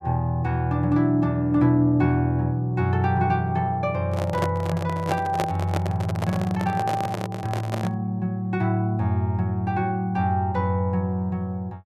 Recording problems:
microphone handling noise; from 4 to 8 s; peak +2 dB vs average level

